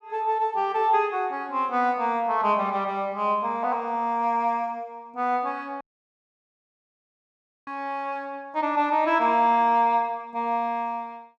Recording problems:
audio cutting out; at 6 s for 2 s

